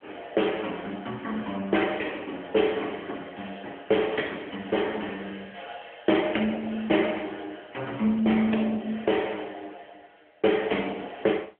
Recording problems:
phone line; 240 Hz to 3.2 kHz, AMR-NB

